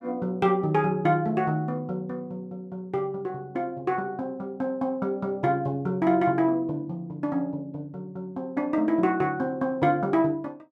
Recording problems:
none

